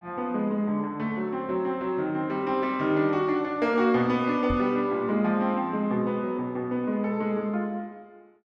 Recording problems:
microphone bump; at 4.5 s; peak -3 dB vs average level

